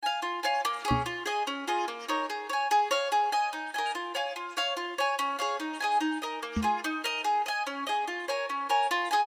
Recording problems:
microphone thump; at 1 s and at 6.5 s; peak +4 dB vs average level

